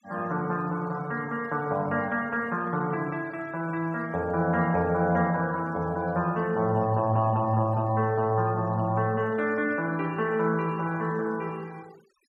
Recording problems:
denoising artefacts; signal-to-artefact ratio 26 dB

